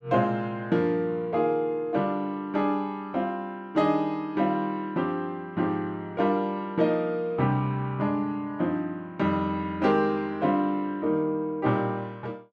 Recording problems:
none

